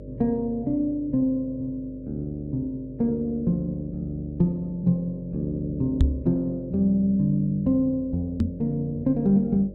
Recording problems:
hum; 50 Hz, harmonics up to 600 Hz, SNR 17 dB
knock on the microphone; at 6 s and at 8.5 s; peak +8 dB vs average level

